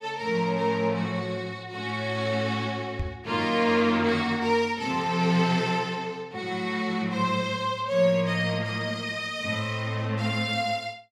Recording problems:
microphone thump; at 3 s; peak -1 dB vs average level

